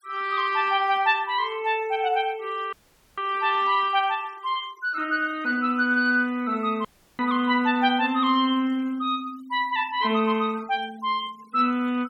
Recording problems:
noise reduction artefacts; signal-to-artefact ratio 25 dB
dropout; at 2.5 s and at 7 s

